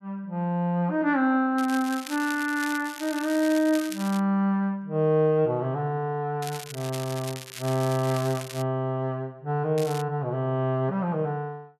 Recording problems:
crackling; from 1.5 to 4 s, from 6.5 to 8.5 s and at 10 s; loose cable, SNR 13 dB

